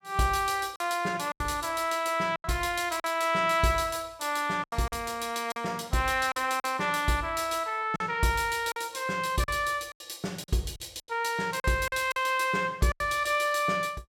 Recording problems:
packet loss; 7% of the sound replaced, filled with silence

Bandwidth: 16.5 kHz